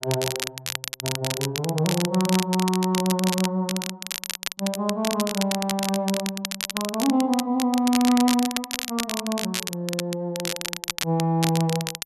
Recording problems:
crackle; vinyl, SNR 5 dB

